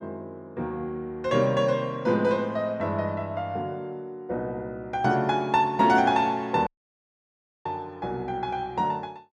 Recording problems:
audio cutting out; at 6.5 s for 1 s

